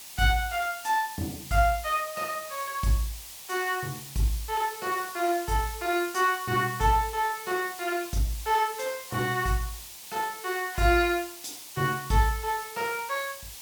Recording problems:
background hiss; SNR 12 dB

